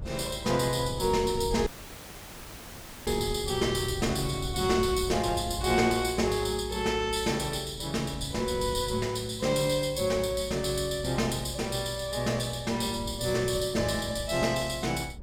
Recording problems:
rumble; below 120 Hz, SNR 13 dB
dropout; at 1.5 s for 1.5 s

